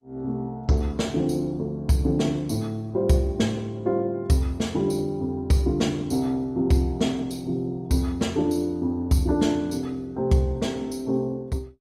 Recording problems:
lossy codec; Opus, log-spectral distance 2 dB, nothing above 16 kHz

